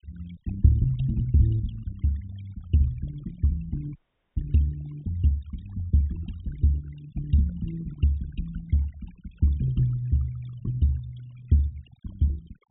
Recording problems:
treble cut off; nothing above 4 kHz
noise reduction artefacts; signal-to-artefact ratio 22 dB
dropout; at 4 s

